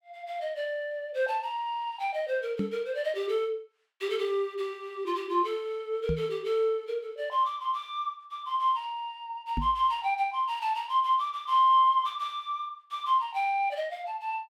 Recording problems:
microphone bump; at 2.5 s, at 6 s and at 9.5 s; peak +2 dB vs average level

